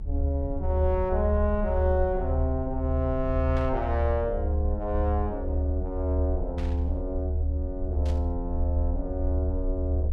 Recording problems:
low-frequency rumble; below 76 Hz, strongest tone 74 Hz, SNR -1 dB
burst of static; at 3.5 s, at 6.5 s and at 8 s; peak -9 dB vs average level

